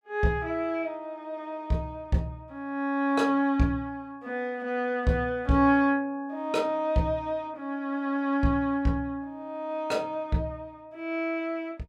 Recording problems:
none

